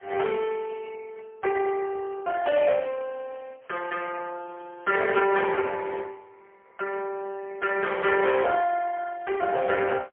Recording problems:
phone line; 340 Hz to 2.6 kHz, AMR-NB, then MP3

